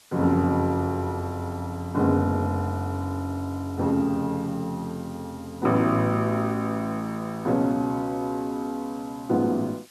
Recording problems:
hiss; slope +1 dB per octave, SNR 25 dB

